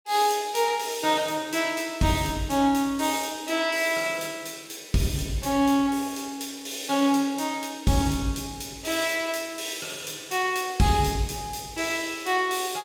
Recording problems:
none

